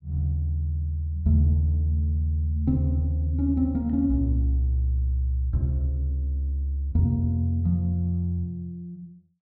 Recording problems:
none

